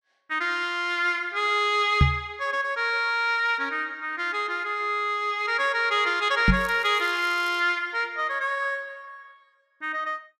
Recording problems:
microphone bump; at 2 s and at 6.5 s; peak +9 dB vs average level
crackling; from 6.5 to 7.5 s; loose cable, SNR 24 dB

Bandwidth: 14.5 kHz